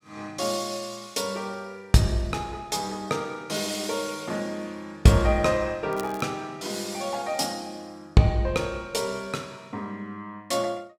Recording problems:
crackling; at 6 s; loose cable, SNR 20 dB

